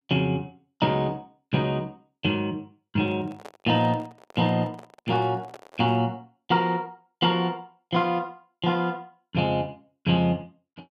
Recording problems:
handling noise; from 3 to 6 s; peak -11 dB vs average level

